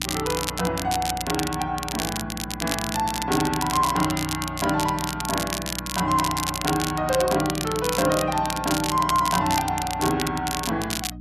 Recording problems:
hum; 60 Hz, harmonics up to 300 Hz, SNR 13 dB
crackle; vinyl, SNR 5 dB

